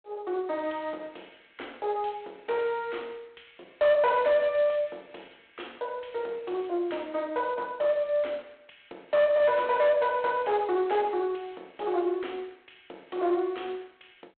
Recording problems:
telephone audio; 280 Hz to 4 kHz, G.726
distorted audio; soft clipping, signal-to-distortion ratio 10 dB

